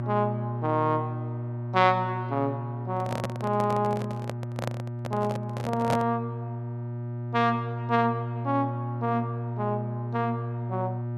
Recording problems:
electrical hum; 60 Hz, harmonics up to 960 Hz, SNR 5 dB
microphone handling noise; from 3 to 6 s; peak +3 dB vs average level

